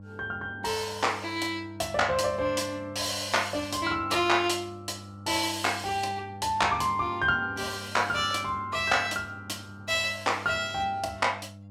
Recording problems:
hum; 50 Hz, harmonics up to 800 Hz, SNR 17 dB

